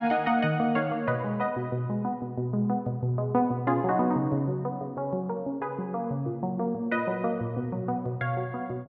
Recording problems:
none

